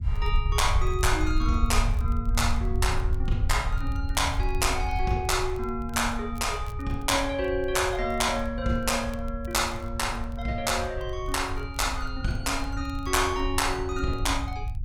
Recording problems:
rumble; below 76 Hz, SNR 4 dB
crackling; vinyl, SNR 30 dB

